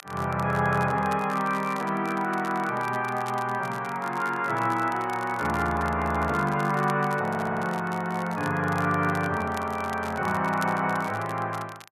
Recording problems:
crackling; vinyl, SNR 19 dB
audio stuttering; at 7.5 s

